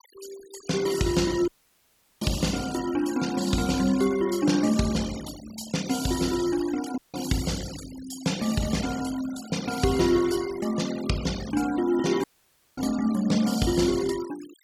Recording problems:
denoising artefacts; signal-to-artefact ratio 14 dB
audio cutting out; at 1.5 s for 0.5 s, at 7 s and at 12 s for 0.5 s

